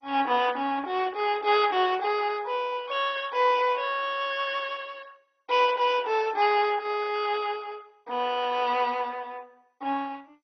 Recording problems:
lossy compression; MP2, log-spectral distance 4 dB, nothing above 5 kHz

